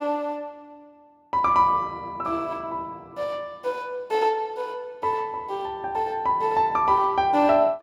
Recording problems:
none

